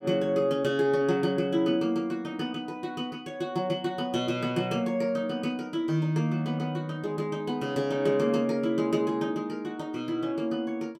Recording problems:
none

